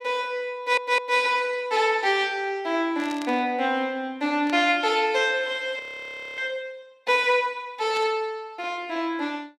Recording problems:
audio stuttering; at 0.5 s
burst of static; at 3 s, at 4.5 s and at 8 s; peak -9 dB vs average level
audio freezing; at 6 s for 0.5 s

